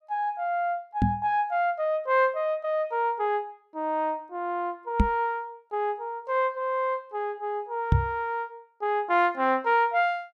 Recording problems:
knock on the microphone; at 1 s, at 5 s and at 8 s; peak +9 dB vs average level

